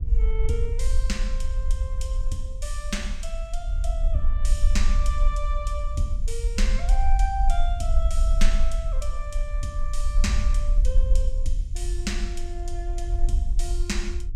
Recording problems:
low-frequency rumble; below 46 Hz, SNR -7 dB

